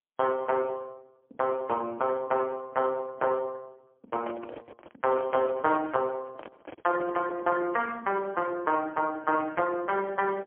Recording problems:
telephone audio; 240 Hz to 2.7 kHz, AMR-NB, then MP3
handling noise; from 4 to 7.5 s; peak -7 dB vs average level

